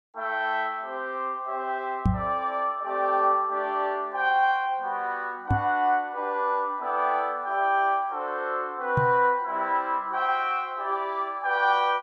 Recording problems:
microphone bump; at 2 s, at 5.5 s and at 9 s; peak +6 dB vs average level

